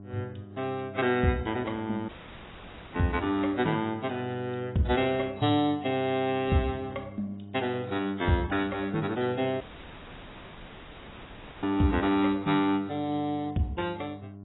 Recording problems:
codec artefacts; AAC, log-spectral distance 7 dB, nothing above 3.9 kHz
mains hum; 50 Hz, harmonics up to 1 kHz, SNR 17 dB
audio cutting out; at 2 s for 1 s and at 9.5 s for 2 s

